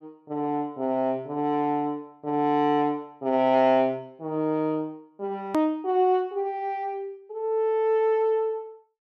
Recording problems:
click at an edit; at 5.5 s

